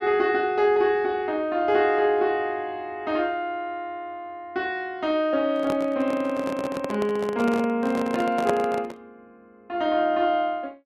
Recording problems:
handling noise; from 5.5 to 9 s; peak +3 dB vs average level

